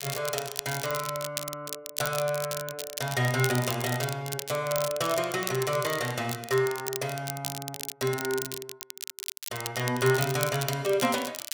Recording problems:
crackle; vinyl, SNR 7 dB

